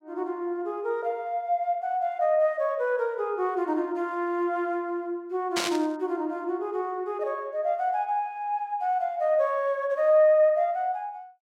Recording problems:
static burst; at 5.5 s; peak +3 dB vs average level

